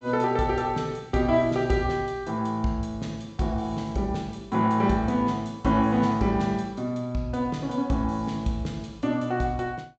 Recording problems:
treble missing; nothing above 8 kHz

